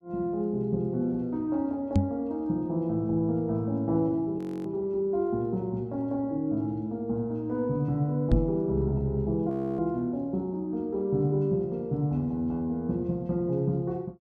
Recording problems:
microphone thump; at 2 s and at 8.5 s; peak +9 dB vs average level
audio freezing; at 4.5 s and at 9.5 s

